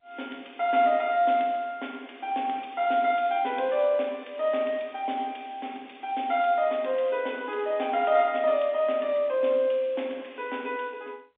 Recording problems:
telephone audio; 220 Hz to 3.6 kHz, G.711

